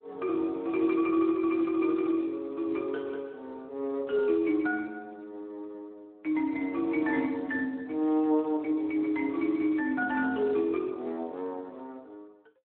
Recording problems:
telephone audio; 240 Hz to 3.1 kHz, Speex

